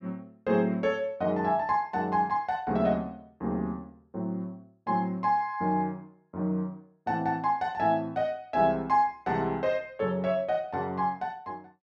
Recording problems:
none

